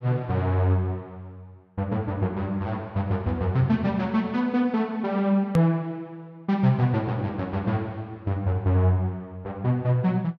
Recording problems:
click at an edit; at 5.5 s

